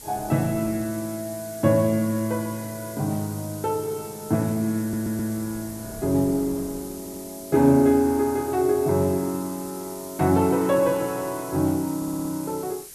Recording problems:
hiss; slope +3 dB per octave, SNR 15 dB
wind noise; below 490 Hz, SNR 20 dB
stutter; at 5 s, at 7 s and at 12 s

